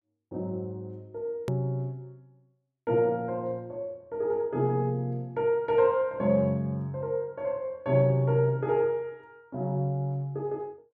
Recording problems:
edit click; at 1.5 s

